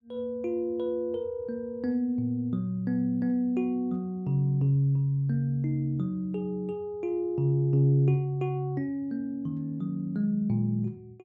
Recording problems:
none

